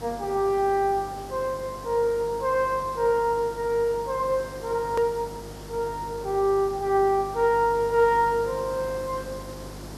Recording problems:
mains hum; 50 Hz, harmonics up to 350 Hz, SNR 19 dB
background hiss; SNR 18 dB
click at an edit; at 5 s

